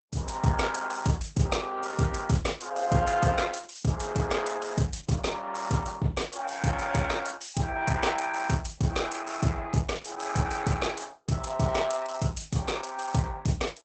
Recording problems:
lossy codec; Opus, log-spectral distance 6 dB, nothing above 8 kHz

